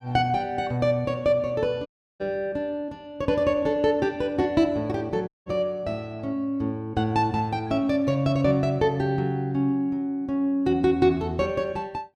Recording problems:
dropout; at 2 s and at 5.5 s

